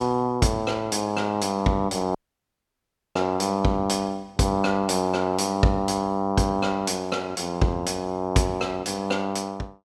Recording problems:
dropout; at 2 s for 1 s

